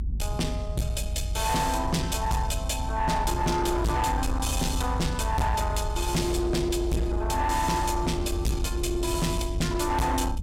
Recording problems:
distorted audio; soft clipping, signal-to-distortion ratio 7 dB
rumble; below 86 Hz, strongest tone 54 Hz, SNR 4 dB

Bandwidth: 16 kHz